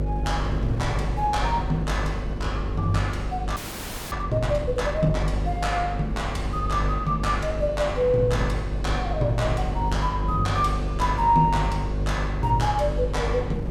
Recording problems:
hum; 50 Hz, harmonics up to 600 Hz, SNR 3 dB
wind noise; below 230 Hz, SNR 9 dB
audio freezing; at 3.5 s for 0.5 s

